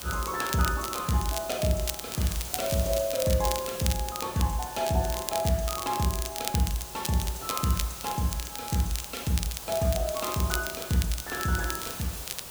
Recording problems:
hiss; SNR 9 dB
crackle; vinyl, SNR 7 dB

